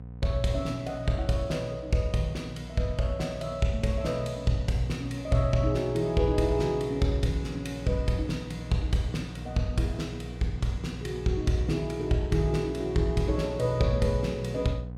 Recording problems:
hum; 60 Hz, harmonics up to 780 Hz, SNR 12 dB

